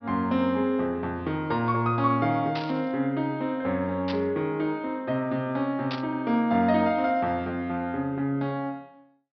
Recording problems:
low-pass filter; nothing above 5.5 kHz
burst of static; at 2.5 s, at 4 s and at 6 s; peak -4 dB vs average level

